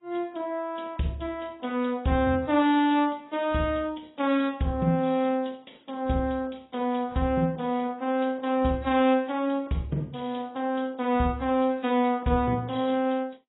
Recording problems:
lossy compression; AAC, log-spectral distance 3 dB, nothing above 3.8 kHz

